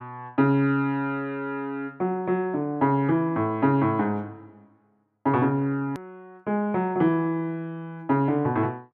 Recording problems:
click at an edit; at 6 s

